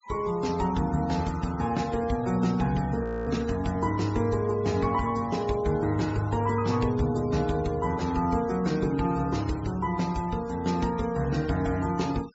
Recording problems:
treble cut off; nothing above 8 kHz
denoising artefacts; signal-to-artefact ratio 21 dB
audio freezing; at 3 s

